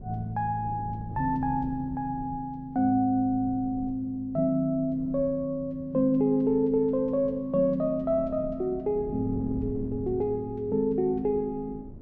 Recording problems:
wind on the microphone; below 220 Hz, SNR 17 dB

